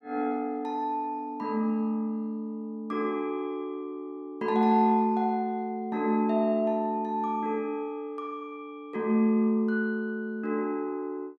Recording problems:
none

